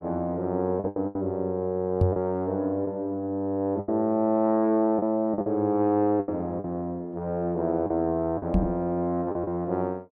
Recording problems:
packet loss; 7% of the sound replaced, filled with the last packet
knock on the microphone; at 2 s and at 8.5 s; peak +7 dB vs average level

